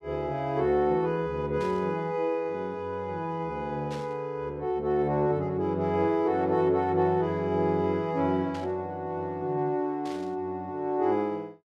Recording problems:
static burst; 4 times, first at 1.5 s; peak -12 dB vs average level

